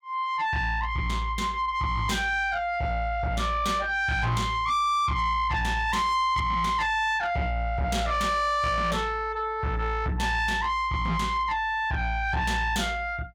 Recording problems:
distorted audio; soft clipping, signal-to-distortion ratio 10 dB

